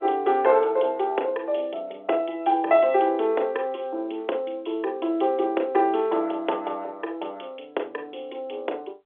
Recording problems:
phone line; 300 Hz to 3.4 kHz, G.711

